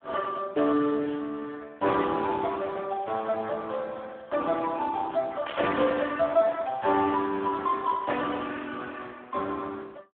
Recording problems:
phone line; 260 Hz to 3 kHz, Speex
static burst; at 5.5 s; peak -8 dB vs average level

